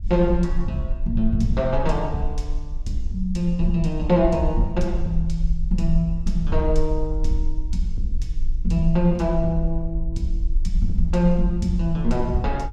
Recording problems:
rumble; below 44 Hz, strongest tone 22 Hz, SNR 4 dB

